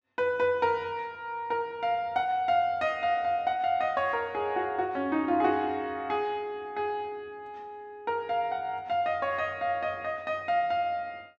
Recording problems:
none

